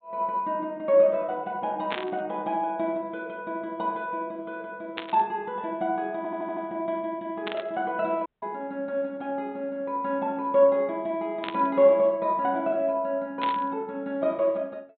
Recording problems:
treble cut off; nothing above 4 kHz
burst of static; 5 times, first at 2 s; peak -1 dB vs average level
audio stuttering; at 6 s
audio cutting out; at 8.5 s

